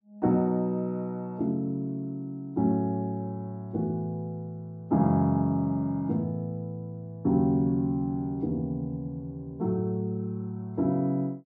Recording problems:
none

